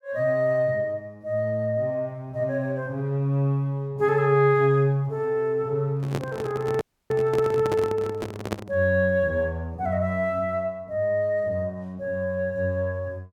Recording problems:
microphone handling noise; from 6 to 9 s; peak +1 dB vs average level
dropout; at 7 s

